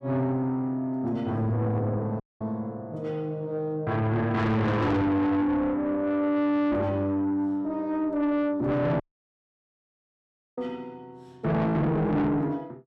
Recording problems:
distorted audio; soft clipping, signal-to-distortion ratio 7 dB
audio cutting out; at 2 s and at 9 s for 1.5 s

